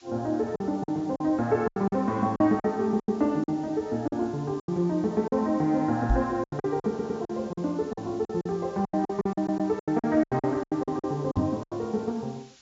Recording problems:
low-pass filter; nothing above 7.4 kHz
background hiss; SNR 27 dB
packet loss; 14% of the sound replaced, filled with silence
microphone thump; at 6 s and at 11 s; peak +5 dB vs average level
stutter; at 7 s and at 9.5 s

